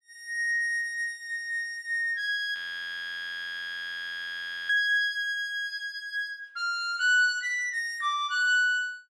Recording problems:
frozen audio; at 2.5 s for 2 s

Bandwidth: 13 kHz